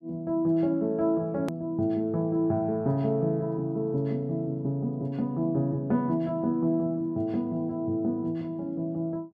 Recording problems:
click at an edit; at 1.5 s

